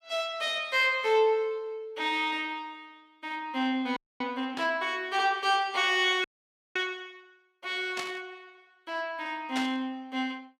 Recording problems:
frozen audio; at 4 s and at 6 s for 0.5 s
burst of static; at 4.5 s, at 8 s and at 9.5 s; peak -2 dB vs average level

